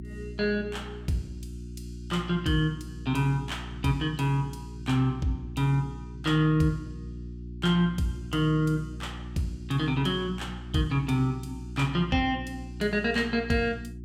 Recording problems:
electrical hum; 60 Hz, harmonics up to 360 Hz, SNR 12 dB

